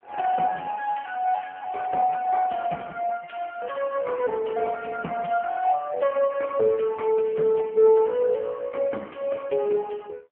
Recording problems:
phone line; 220 Hz to 2.9 kHz, AMR-NB

